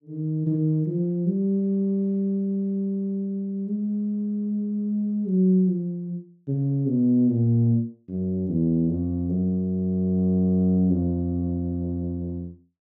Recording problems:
none

